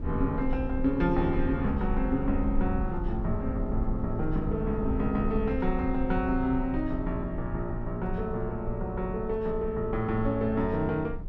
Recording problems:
low-frequency rumble; below 70 Hz, SNR 6 dB

